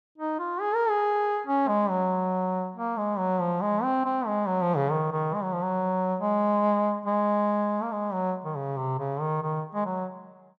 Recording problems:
none

